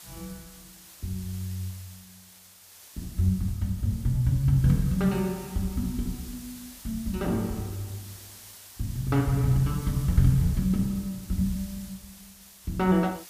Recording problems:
hiss; slope +1 dB per octave, SNR 18 dB

